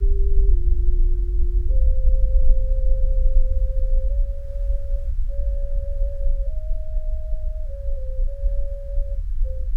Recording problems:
background hiss; SNR 23 dB
rumble; below 46 Hz, SNR -16 dB

